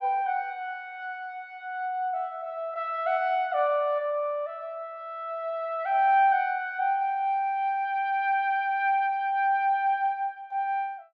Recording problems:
none

